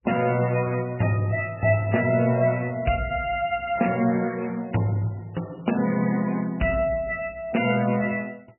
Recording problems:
codec artefacts; MP3, log-spectral distance 5 dB, nothing above 2.8 kHz

